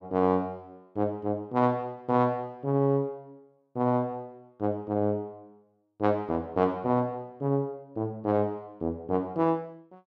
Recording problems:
none

